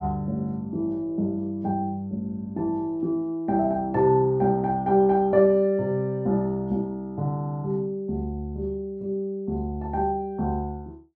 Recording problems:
none

